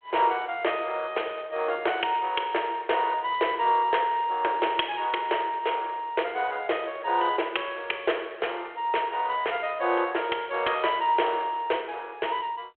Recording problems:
telephone audio; 300 Hz to 3.3 kHz, G.726

